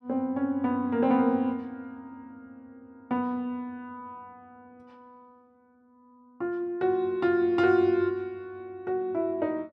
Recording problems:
none

